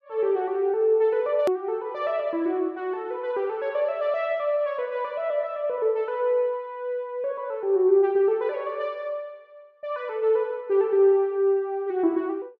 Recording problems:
click at an edit; at 1.5 s

